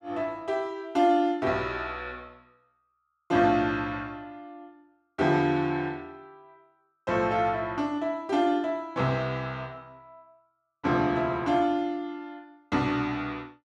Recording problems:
none

